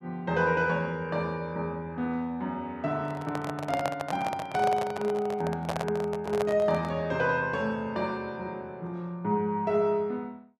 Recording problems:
handling noise; from 3 to 7 s; peak +2 dB vs average level

